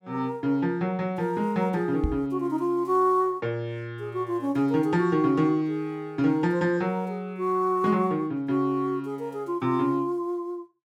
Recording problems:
microphone thump; at 2 s; peak +3 dB vs average level

